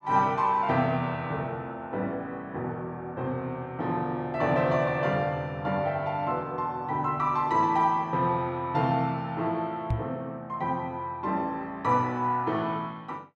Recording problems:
microphone thump; at 10 s; peak +3 dB vs average level

